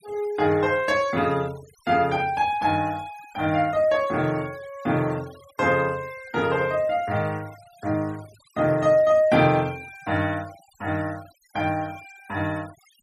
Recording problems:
denoising artefacts; signal-to-artefact ratio 23 dB

